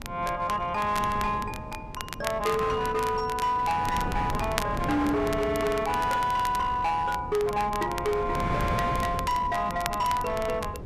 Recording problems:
distorted audio; hard clipping, signal-to-distortion ratio 12 dB
wind noise; below 330 Hz, SNR 9 dB
crackling; vinyl, SNR 13 dB

